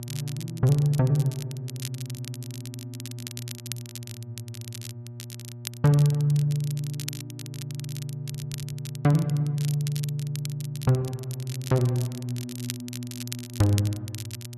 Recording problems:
hum; 60 Hz, harmonics up to 600 Hz, SNR 13 dB
crackling; vinyl, SNR 14 dB
stutter; at 8.5 s

